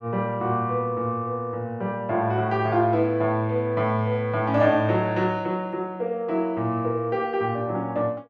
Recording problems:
none

